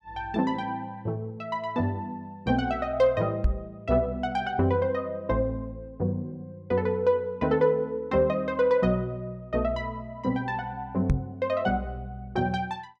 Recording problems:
microphone bump; at 3.5 s and at 11 s; peak +7 dB vs average level

